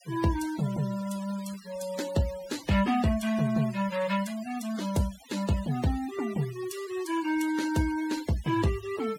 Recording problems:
noise reduction artefacts; signal-to-artefact ratio 15 dB

